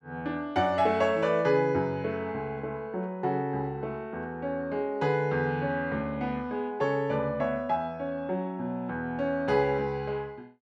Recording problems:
none

